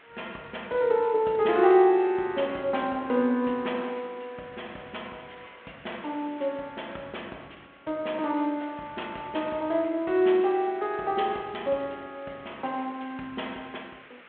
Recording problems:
telephone audio; 280 Hz to 3.6 kHz, G.726
hiss; SNR 25 dB

